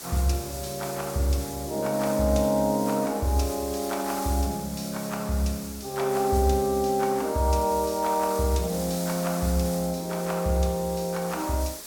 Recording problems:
background hiss; SNR 11 dB

